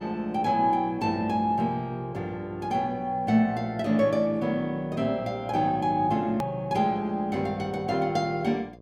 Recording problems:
hum; 60 Hz, harmonics up to 1.1 kHz, SNR 23 dB
hard cut with a click; at 6.5 s

